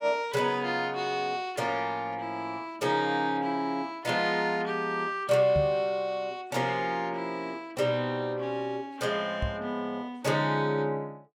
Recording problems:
microphone bump; at 5.5 s and at 9.5 s; peak +1 dB vs average level

